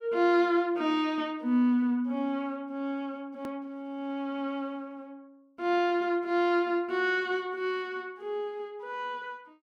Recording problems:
click at an edit; at 3.5 s

